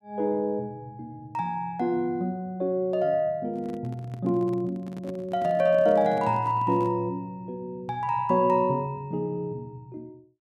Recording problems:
microphone handling noise; from 3.5 to 7 s; peak -9 dB vs average level

